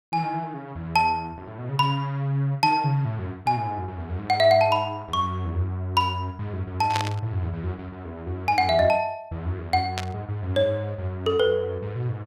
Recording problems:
static burst; at 7 s and at 10 s; peak +1 dB vs average level

